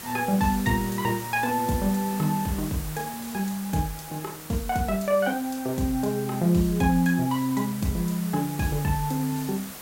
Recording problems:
background hiss; slope -2 dB per octave, SNR 12 dB

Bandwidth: 16 kHz